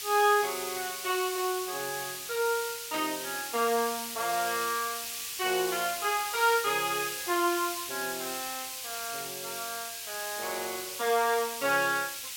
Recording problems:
hiss; SNR 5 dB
static burst; at 3 s; peak -6 dB vs average level

